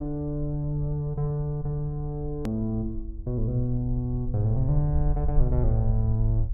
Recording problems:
low-frequency rumble; below 62 Hz, SNR 5 dB
click at an edit; at 2.5 s

